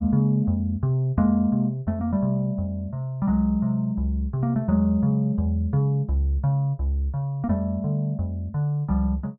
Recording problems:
none

